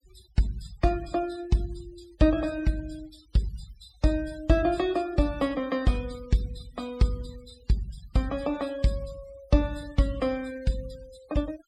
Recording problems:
denoising artefacts; signal-to-artefact ratio 21 dB

